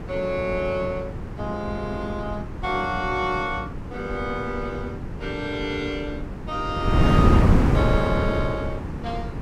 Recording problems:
wind on the microphone; below 260 Hz, SNR -2 dB

